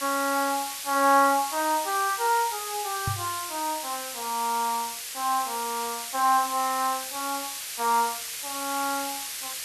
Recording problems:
hiss; slope +4 dB per octave, SNR 6 dB
microphone thump; at 3 s; peak -1 dB vs average level

